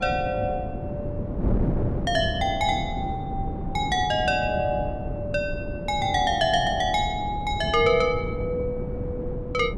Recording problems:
wind on the microphone; below 270 Hz, SNR 6 dB

